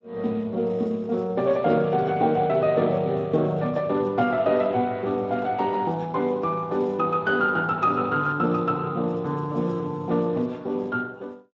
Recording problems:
lossy compression; Speex, log-spectral distance 2 dB

